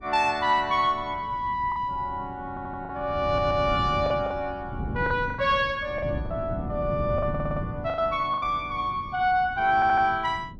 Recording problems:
wind noise; below 200 Hz, SNR 11 dB
packet loss; 6% of the sound replaced, filled with the last packet
stutter; 4 times, first at 2.5 s

